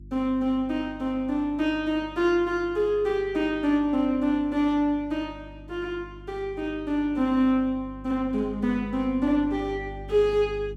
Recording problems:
hum; 50 Hz, harmonics up to 350 Hz, SNR 19 dB

